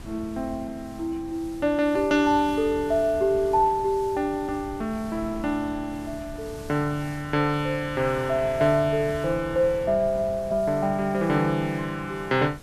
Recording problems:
background hiss; slope +1 dB per octave, SNR 25 dB
wind noise; below 260 Hz, SNR 17 dB

